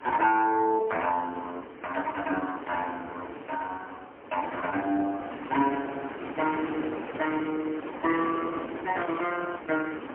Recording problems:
phone line; 220 Hz to 3.1 kHz, AMR-NB, then MP3
wind on the microphone; below 1.3 kHz, SNR 10 dB

